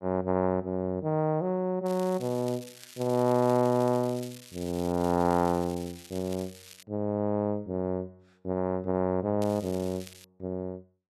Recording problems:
crackling; from 2 to 7 s and at 9.5 s; loose cable, SNR 18 dB

